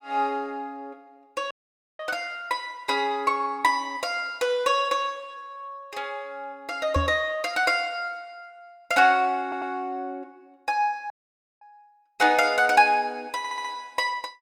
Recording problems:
audio cutting out; at 1.5 s and at 11 s for 0.5 s
knock on the microphone; at 7 s; peak +2 dB vs average level
stutter; at 9.5 s and at 13 s

